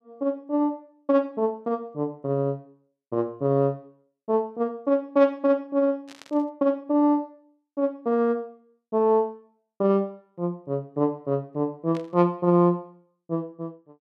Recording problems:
burst of static; at 6 s and at 12 s; peak -14 dB vs average level

